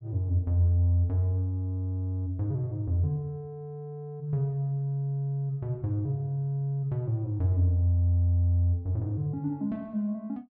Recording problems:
none

